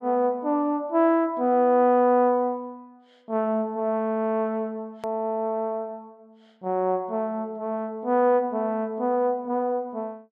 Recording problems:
click at an edit; at 5 s

